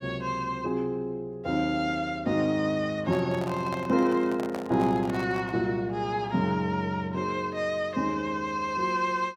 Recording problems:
handling noise; from 3 to 5.5 s; peak -5 dB vs average level

